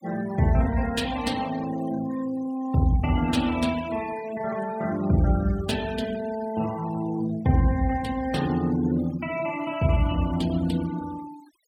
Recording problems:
denoising artefacts; signal-to-artefact ratio 17 dB

